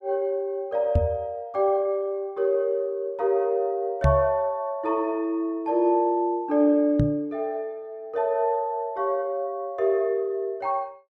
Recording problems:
knock on the microphone; at 1 s, at 4 s and at 7 s; peak +6 dB vs average level

